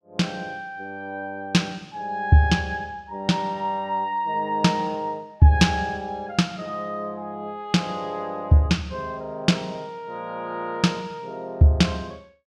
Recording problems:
none

